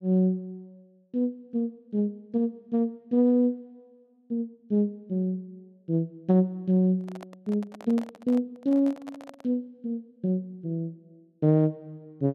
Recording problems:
handling noise; from 7 to 9.5 s; peak -8 dB vs average level

